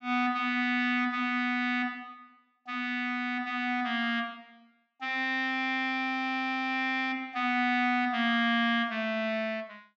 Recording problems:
low-pass filter; nothing above 8 kHz

